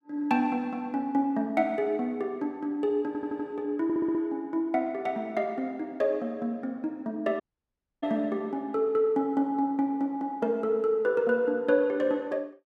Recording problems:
audio stuttering; at 3 s and at 4 s
dropout; at 7.5 s for 0.5 s

